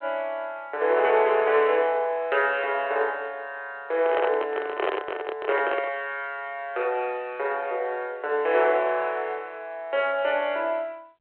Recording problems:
telephone audio; 370 Hz to 3.3 kHz, G.726
microphone handling noise; from 4 to 6 s; peak +3 dB vs average level

